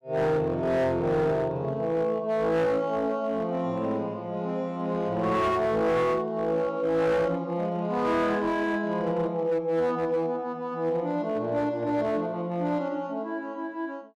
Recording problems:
distortion; hard clipping, signal-to-distortion ratio 12 dB

